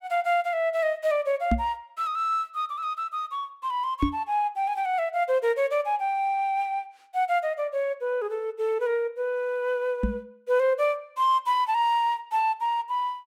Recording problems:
microphone bump; at 1.5 s, at 4 s and at 10 s; peak +6 dB vs average level

